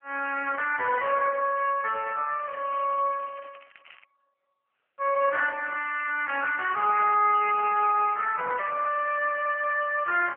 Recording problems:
phone line; 300 Hz to 3 kHz, AMR-NB
crackling; from 2.5 to 4 s and from 6 to 8 s; loose cable, SNR 27 dB

